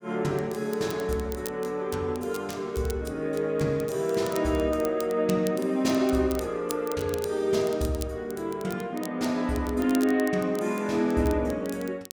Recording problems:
crackle; vinyl, SNR 17 dB

